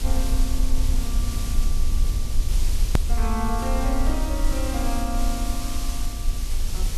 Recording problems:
background hiss; slope 0 dB per octave, SNR 5 dB
rumble; below 50 Hz, strongest tone 20 Hz, SNR -4 dB
edit click; at 3 s

